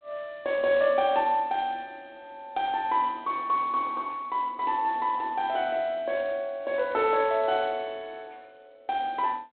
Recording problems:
phone line; 190 Hz to 4 kHz, G.726

